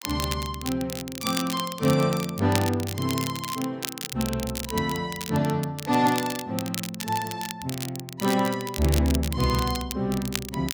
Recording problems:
crackling; vinyl, SNR 8 dB

